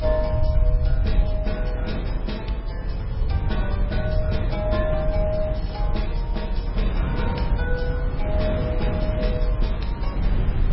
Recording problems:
lossy codec; MP3, log-spectral distance 3 dB, nothing above 5.3 kHz
low-frequency rumble; below 76 Hz, strongest tone 40 Hz, SNR -3 dB
wind noise; below 160 Hz, SNR 0 dB

